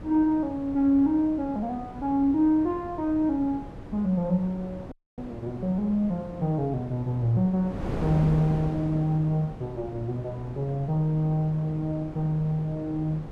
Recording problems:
wind on the microphone; below 410 Hz, SNR 12 dB
audio cutting out; at 5 s

